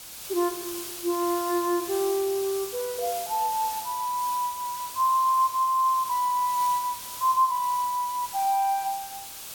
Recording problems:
background hiss; slope +1 dB per octave, SNR 10 dB

